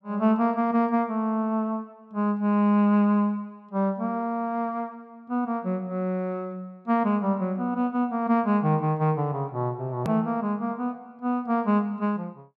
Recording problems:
edit click; at 10 s

